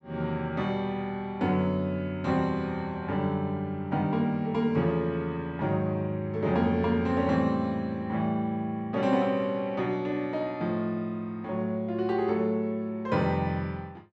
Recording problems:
none

